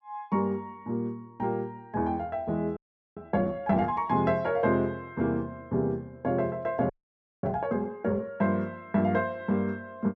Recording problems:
audio freezing; at 3 s and at 7 s for 0.5 s

